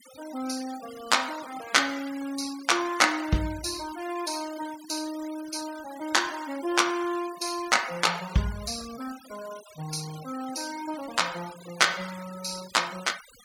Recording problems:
noise reduction artefacts; signal-to-artefact ratio 16 dB

